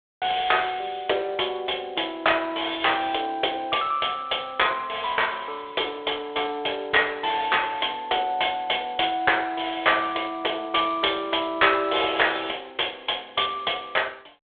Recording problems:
telephone audio; 320 Hz to 3.5 kHz, G.726

